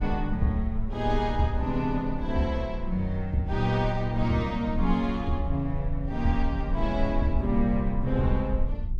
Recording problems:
rumble; below 50 Hz, strongest tone 20 Hz, SNR 7 dB

